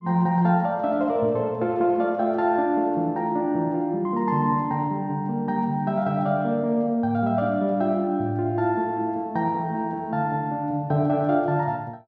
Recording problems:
none

